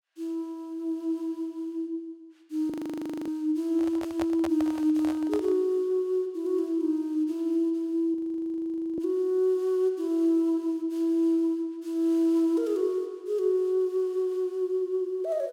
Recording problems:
audio freezing; at 2.5 s for 0.5 s and at 8 s for 1 s
handling noise; from 3.5 to 5.5 s; peak -3 dB vs average level

